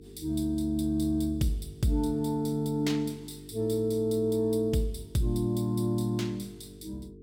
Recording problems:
hum; 50 Hz, harmonics up to 450 Hz, SNR 20 dB

